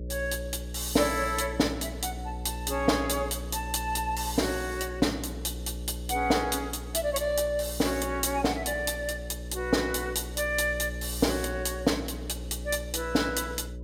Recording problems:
electrical hum; 60 Hz, harmonics up to 600 Hz, SNR 9 dB

